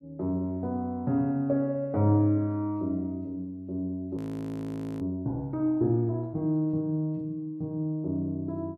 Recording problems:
audio freezing; at 4 s for 1 s

